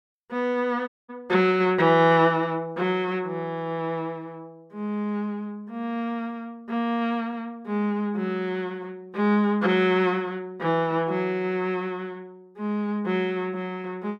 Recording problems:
dropout; at 1 s

